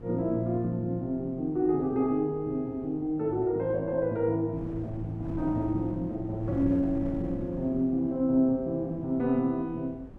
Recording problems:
wind noise; below 270 Hz, SNR 15 dB

